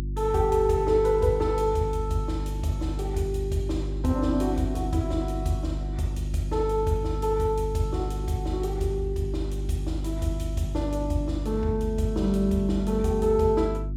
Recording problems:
hum; 50 Hz, harmonics up to 350 Hz, SNR 5 dB

